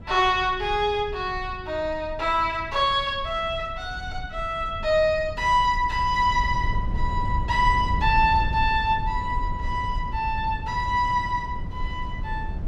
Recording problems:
low-frequency rumble; below 94 Hz, SNR 9 dB

